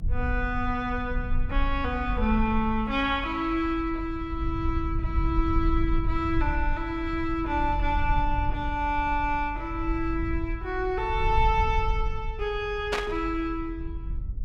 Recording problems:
rumble; below 66 Hz, SNR 4 dB
burst of static; at 13 s; peak +4 dB vs average level

